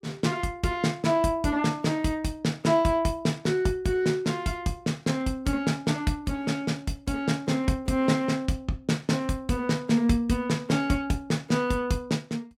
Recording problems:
none

